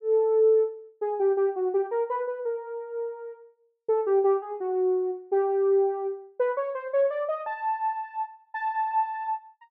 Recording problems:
none

